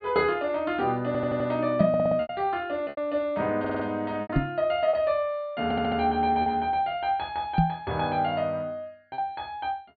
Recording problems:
low-pass filter; nothing above 4.6 kHz
lost packets; 4% of the sound replaced, filled with repeated pitch periods
audio stuttering; 4 times, first at 1 s
microphone bump; at 2 s, at 4.5 s and at 7.5 s; peak +8 dB vs average level

